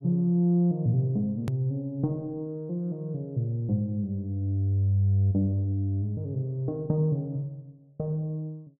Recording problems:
hard cut with a click; at 1.5 s

